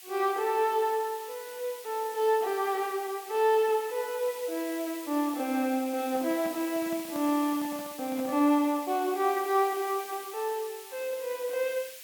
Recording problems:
background hiss; SNR 14 dB
handling noise; from 6 to 8.5 s; peak -11 dB vs average level

